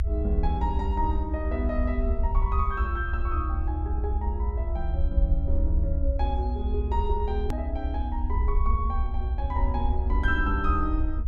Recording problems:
rumble; below 72 Hz, SNR -4 dB
click at an edit; at 7.5 s

